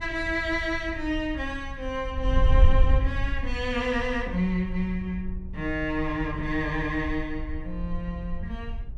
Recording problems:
wind on the microphone; below 62 Hz, SNR 2 dB

